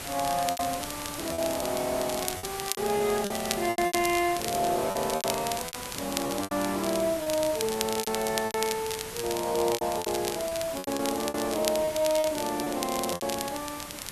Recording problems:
background hiss; slope -2 dB per octave, SNR 8 dB
crackle; vinyl, SNR 7 dB
lost packets; 12% of the sound replaced, filled with repeated pitch periods

